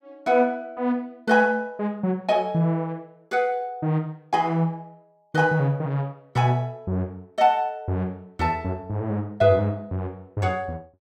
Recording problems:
none

